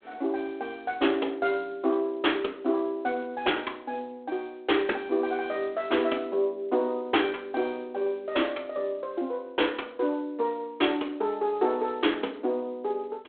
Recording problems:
phone line; 260 Hz to 3.4 kHz, G.726

